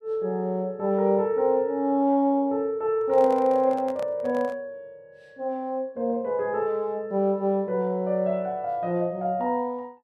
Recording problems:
handling noise; from 3 to 4.5 s; peak -10 dB vs average level

